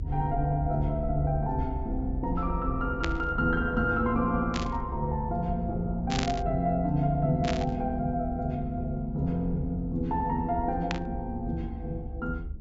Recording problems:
treble missing; nothing above 8 kHz
rumble; below 72 Hz, SNR 7 dB
burst of static; 5 times, first at 3 s; peak +2 dB vs average level

